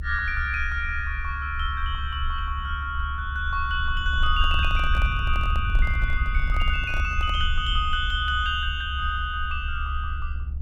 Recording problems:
low-frequency rumble; below 70 Hz, SNR 2 dB
microphone handling noise; from 4 to 7.5 s; peak -9 dB vs average level

